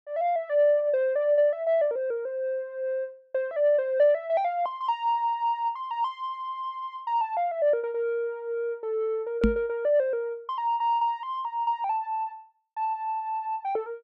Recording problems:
knock on the microphone; at 9.5 s; peak +7 dB vs average level

